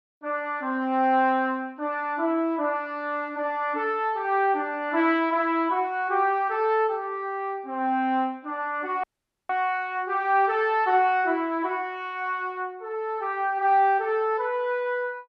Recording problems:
dropout; at 9 s

